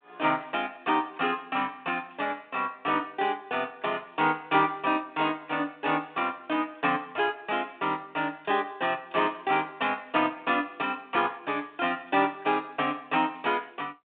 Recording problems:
phone line; 280 Hz to 3.7 kHz, G.726

